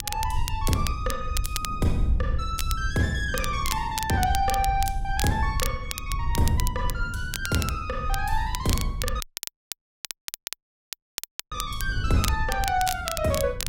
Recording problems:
low-frequency rumble; below 74 Hz, SNR 5 dB
wind noise; below 170 Hz, SNR 12 dB
crackling; vinyl, SNR 6 dB
audio cutting out; at 9 s for 2.5 s

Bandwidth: 16 kHz